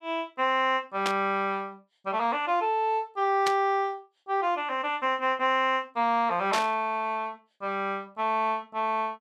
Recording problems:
burst of static; at 1 s, at 3.5 s and at 6.5 s; peak +2 dB vs average level

